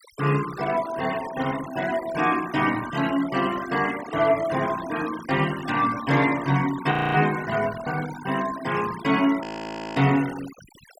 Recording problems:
denoising artefacts; signal-to-artefact ratio 14 dB
frozen audio; at 7 s and at 9.5 s for 0.5 s

